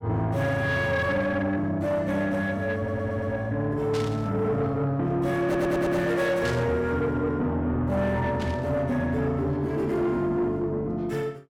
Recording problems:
distorted audio; soft clipping, signal-to-distortion ratio 11 dB
audio stuttering; at 3 s and at 5.5 s
static burst; at 4 s, at 6.5 s and at 8.5 s; peak -7 dB vs average level

